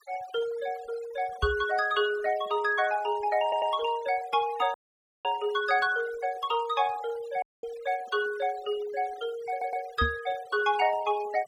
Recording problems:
noise reduction artefacts; signal-to-artefact ratio 19 dB
microphone bump; at 1.5 s and at 10 s; peak +2 dB vs average level
audio stuttering; at 3.5 s and at 9.5 s
audio cutting out; at 4.5 s for 0.5 s and at 7.5 s

